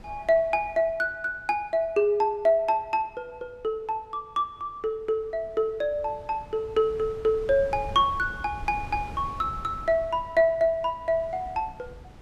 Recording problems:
wind on the microphone; below 210 Hz, SNR 18 dB

